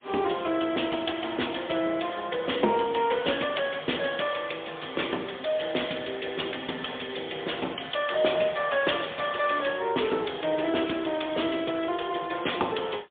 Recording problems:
telephone audio; 240 Hz to 3.5 kHz, AMR-NB, then MP3

